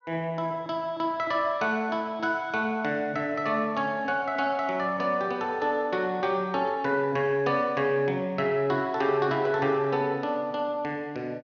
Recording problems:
low-pass filter; nothing above 6.6 kHz

